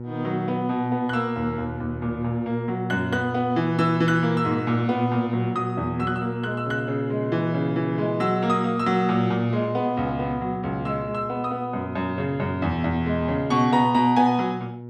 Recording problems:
hum; 60 Hz, harmonics up to 960 Hz, SNR 9 dB

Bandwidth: 13 kHz